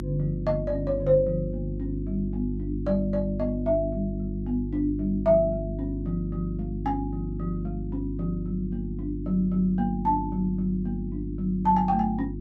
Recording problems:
hum; 50 Hz, harmonics up to 350 Hz, SNR 5 dB

